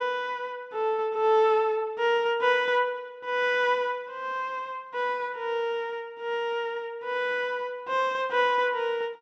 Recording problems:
none

